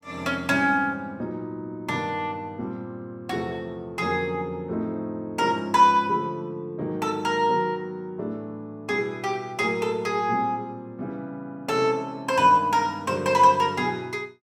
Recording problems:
none

